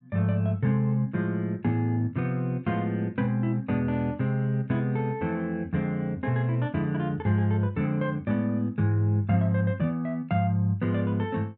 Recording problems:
none

